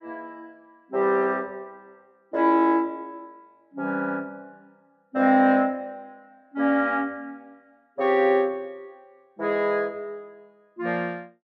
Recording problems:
none

